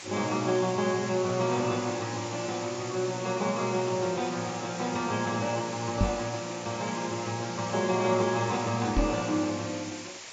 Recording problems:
codec artefacts; AAC, log-spectral distance 18 dB
background hiss; slope 0 dB per octave, SNR 10 dB
microphone bump; at 6 s and at 9 s; peak +6 dB vs average level

